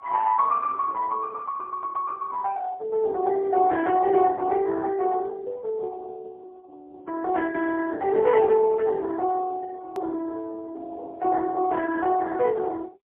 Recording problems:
phone line; 340 Hz to 2.3 kHz, AMR-NB, then MP3
click at an edit; at 10 s

